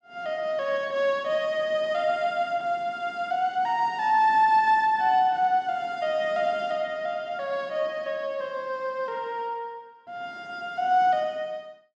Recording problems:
none

